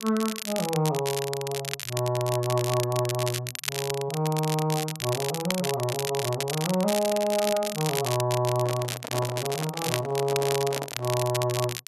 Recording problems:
crackle; vinyl, SNR 5 dB
handling noise; from 8.5 to 11 s; peak -4 dB vs average level

